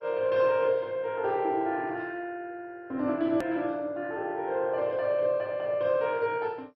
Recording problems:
lossy codec; MP2, log-spectral distance 2 dB, nothing above 13.1 kHz
click at an edit; at 3.5 s

